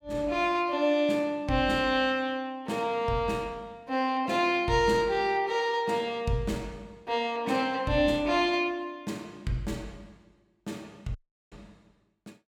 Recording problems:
dropout; at 11 s

